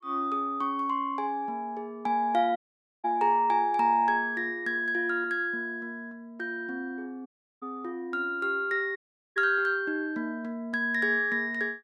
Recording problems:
audio cutting out; at 2.5 s, at 7.5 s and at 9 s

